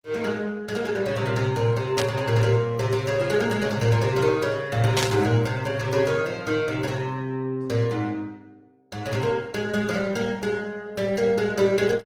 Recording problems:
lossy codec; Opus, log-spectral distance 3 dB, nothing above 19 kHz
burst of static; at 2 s and at 5 s; peak +2 dB vs average level

